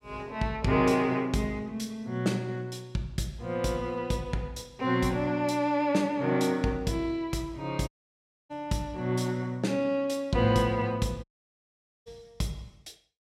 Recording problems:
audio cutting out; at 8 s for 0.5 s and at 11 s for 1 s

